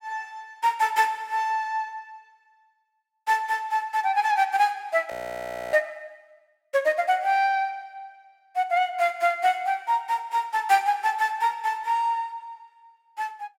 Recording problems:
frozen audio; at 5 s for 0.5 s

